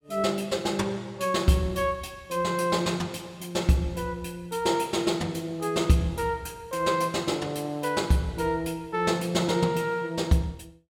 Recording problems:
none

